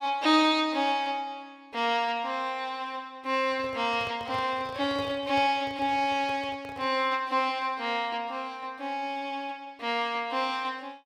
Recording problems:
handling noise; from 3.5 to 7 s; peak -8 dB vs average level

